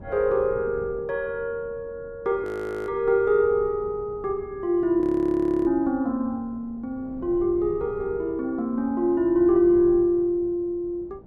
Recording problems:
wind noise; below 310 Hz, SNR 20 dB
frozen audio; at 2.5 s and at 5 s for 0.5 s

